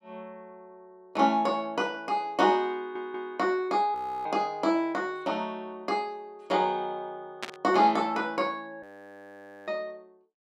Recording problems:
audio stuttering; at 3 s
audio freezing; at 4 s and at 9 s for 1 s
burst of static; at 7.5 s; peak -2 dB vs average level

